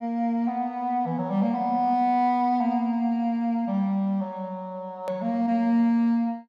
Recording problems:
edit click; at 5 s

